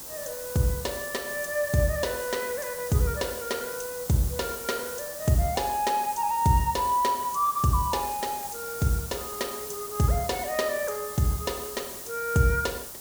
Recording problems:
hiss; SNR 9 dB

